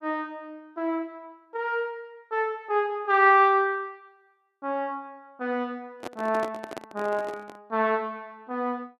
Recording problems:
microphone handling noise; from 6 to 7.5 s; peak -5 dB vs average level

